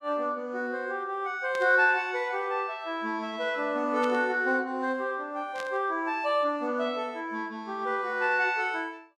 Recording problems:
static burst; at 1.5 s, at 4 s and at 5.5 s; peak -9 dB vs average level

